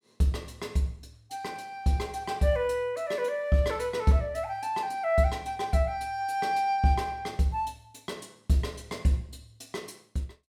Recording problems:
none

